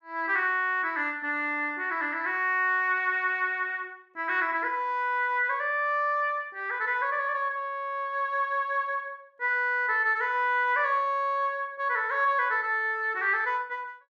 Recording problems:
none

